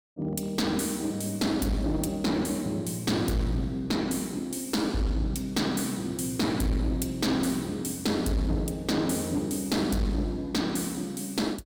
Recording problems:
distorted audio; hard clipping, uneven, signal-to-distortion ratio 10 dB

